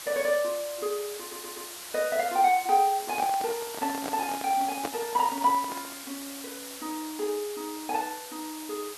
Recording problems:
background hiss; slope +1 dB per octave, SNR 10 dB
stutter; at 1 s
microphone handling noise; from 3 to 6 s; peak 0 dB vs average level

